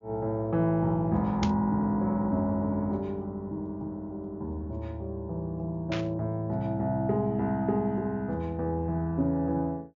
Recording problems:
treble missing; nothing above 7 kHz
burst of static; at 1.5 s and at 6 s; peak -1 dB vs average level

